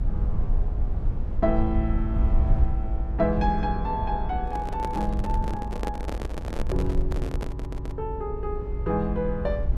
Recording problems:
low-frequency rumble; below 66 Hz, SNR 0 dB
handling noise; from 4.5 to 8 s; peak +1 dB vs average level
audio stuttering; at 7.5 s

